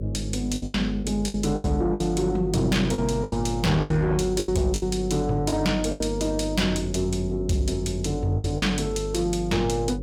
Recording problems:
distortion; soft clipping, signal-to-distortion ratio 11 dB
electrical hum; 50 Hz, harmonics up to 550 Hz, SNR 7 dB
lost packets; 9% of the sound replaced, filled with the last packet

